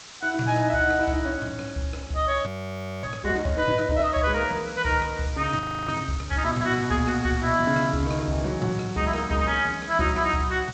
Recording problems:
lossy codec; G.722, log-spectral distance 7 dB
background hiss; slope +1 dB per octave, SNR 18 dB
frozen audio; at 2.5 s for 0.5 s and at 5.5 s

